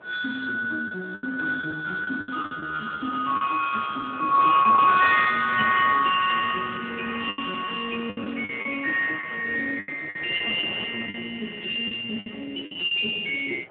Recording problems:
phone line; 450 Hz to 2.1 kHz, Speex
wind on the microphone; below 1.1 kHz, SNR 19 dB
packet loss; 8% of the sound replaced, filled with the last packet

